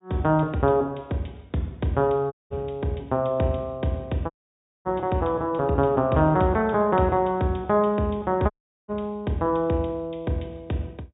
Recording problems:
treble cut off; nothing above 4 kHz
dropout; at 2.5 s, at 4.5 s for 0.5 s and at 8.5 s

